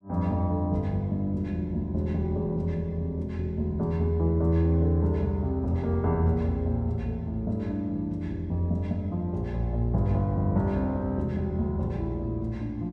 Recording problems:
none

